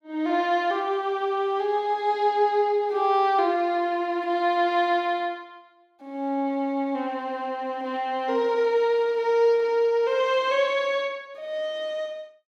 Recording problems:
none

